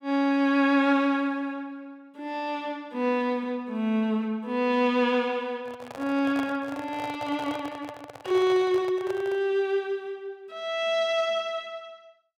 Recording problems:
microphone handling noise; from 5.5 to 9.5 s; peak -6 dB vs average level

